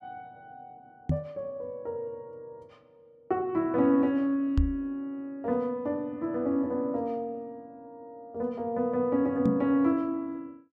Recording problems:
microphone thump; at 1 s, at 4.5 s and at 9.5 s; peak +7 dB vs average level

